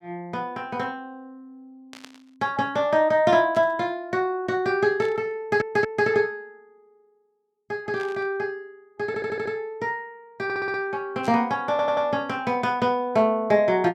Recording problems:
burst of static; 5 times, first at 2 s; peak -13 dB vs average level
stutter; 4 times, first at 5.5 s

